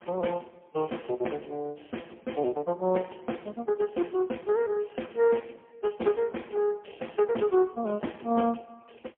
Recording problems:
telephone audio; 240 Hz to 3.3 kHz, AMR-NB, then MP3

